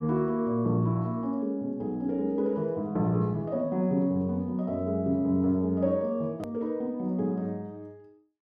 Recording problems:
hard cut with a click; at 6.5 s

